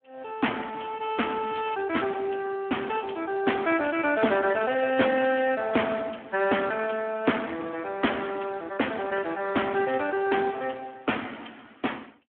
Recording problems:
phone line; 240 Hz to 3.3 kHz, Speex

